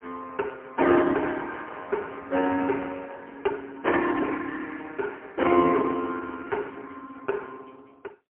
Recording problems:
telephone audio; 240 Hz to 3.2 kHz, AMR-NB, then MP3

